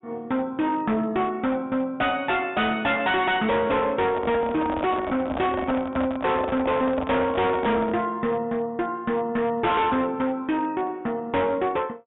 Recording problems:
low-pass filter; nothing above 3.7 kHz
distortion; hard clipping, signal-to-distortion ratio 8 dB
microphone handling noise; from 4 to 8 s; peak -1 dB vs average level

